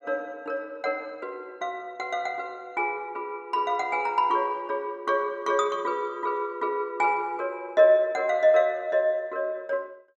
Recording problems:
none

